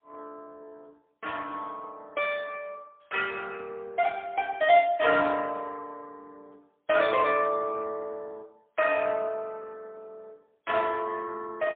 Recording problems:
phone line; 320 Hz to 3.3 kHz, AMR-NB, then MP3

